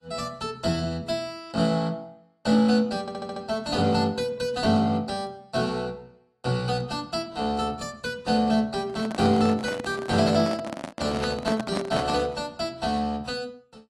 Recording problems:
lossy codec; AAC, log-spectral distance 2 dB, nothing above 11.6 kHz
audio stuttering; at 3 s
handling noise; from 9 to 12 s; peak 0 dB vs average level

